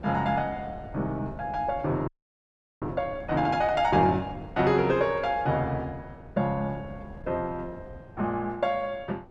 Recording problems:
wind on the microphone; below 390 Hz, SNR 18 dB
audio freezing; at 2 s for 0.5 s

